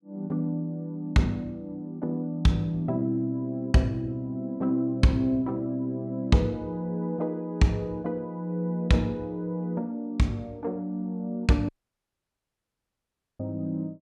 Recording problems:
dropout; at 12 s for 1.5 s

